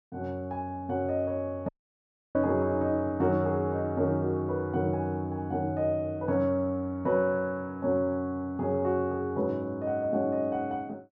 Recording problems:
dropout; at 1.5 s for 0.5 s

